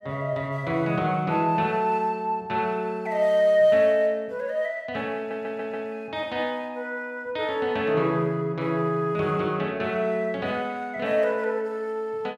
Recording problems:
audio stuttering; at 5 s

